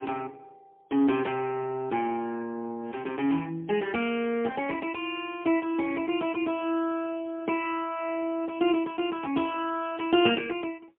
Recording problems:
phone line; 240 Hz to 3.2 kHz, AMR-NB, then MP3

